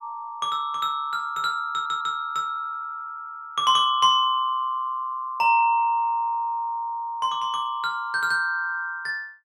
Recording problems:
stutter; at 1.5 s

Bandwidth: 14.5 kHz